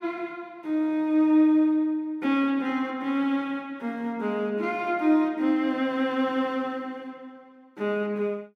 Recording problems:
none

